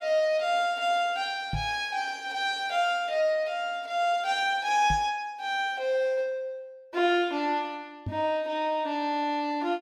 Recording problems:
knock on the microphone; at 1.5 s, at 5 s and at 8 s; peak -1 dB vs average level

